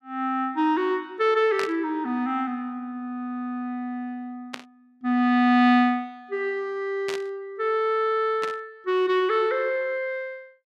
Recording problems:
burst of static; 4 times, first at 1.5 s; peak -3 dB vs average level

